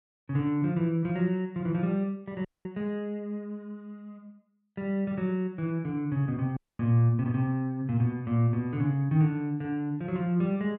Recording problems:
dropout; at 2.5 s and at 6.5 s

